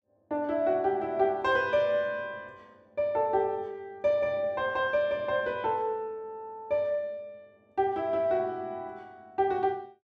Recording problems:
none

